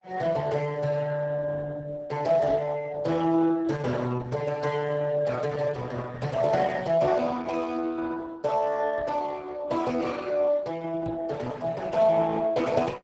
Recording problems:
codec artefacts; Speex, then Opus, log-spectral distance 4 dB, nothing above 7.8 kHz
microphone bump; at 2.5 s, at 9 s and at 11 s; peak -3 dB vs average level

